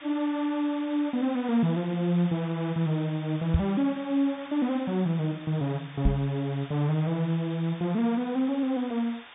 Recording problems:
low-pass filter; nothing above 3.7 kHz
background hiss; SNR 18 dB
microphone thump; at 3.5 s and at 6 s; peak +7 dB vs average level

